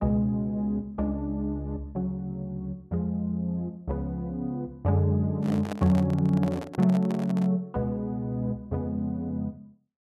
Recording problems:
handling noise; from 5.5 to 7.5 s; peak -3 dB vs average level

